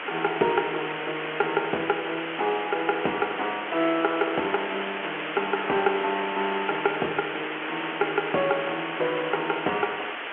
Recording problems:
phone line; 280 Hz to 4 kHz, G.711
hiss; SNR 5 dB

